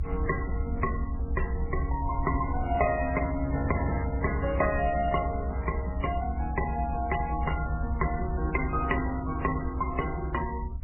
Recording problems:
lossy codec; MP3, then AAC, log-spectral distance 4 dB, nothing above 2.9 kHz
rumble; below 70 Hz, SNR 3 dB

